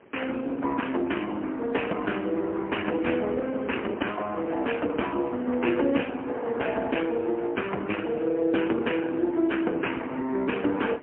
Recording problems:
phone line; 220 Hz to 3.1 kHz, AMR-NB, then MP3
wind noise; below 920 Hz, SNR 19 dB

